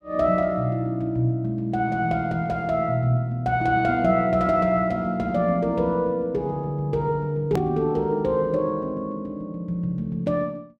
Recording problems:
edit click; at 7.5 s

